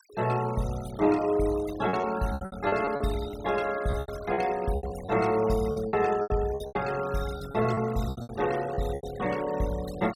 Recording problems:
denoising artefacts; signal-to-artefact ratio 16 dB
packet loss; 12% of the sound replaced, filled with repeated pitch periods

